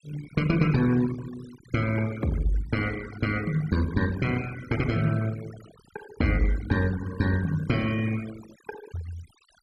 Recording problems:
noise reduction artefacts; signal-to-artefact ratio 17 dB

